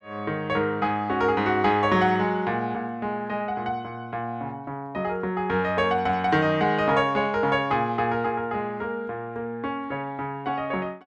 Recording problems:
none

